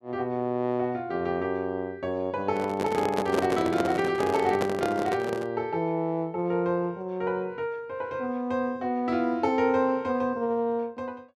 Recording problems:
handling noise; from 2.5 to 5.5 s; peak +4 dB vs average level

